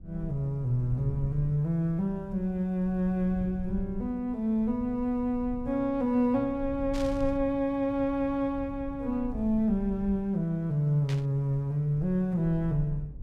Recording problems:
low-frequency rumble; below 76 Hz, SNR 15 dB
burst of static; at 7 s and at 11 s; peak -9 dB vs average level

